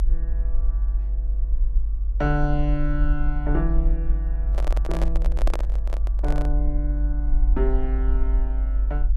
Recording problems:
mains hum; 60 Hz, harmonics up to 960 Hz, SNR 22 dB
low-frequency rumble; below 50 Hz, strongest tone 48 Hz, SNR -5 dB
handling noise; from 4.5 to 6.5 s; peak +3 dB vs average level

